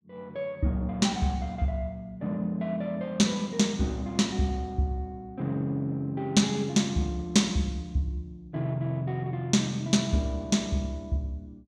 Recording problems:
none

